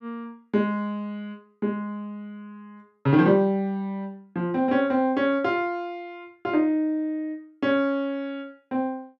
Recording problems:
none

